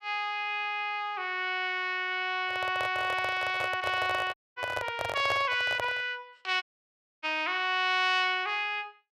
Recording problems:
microphone handling noise; from 2.5 to 6 s; peak -1 dB vs average level
audio cutting out; at 4.5 s and at 6.5 s for 0.5 s

